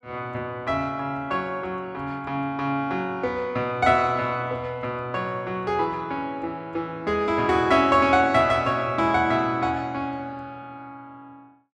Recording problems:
none

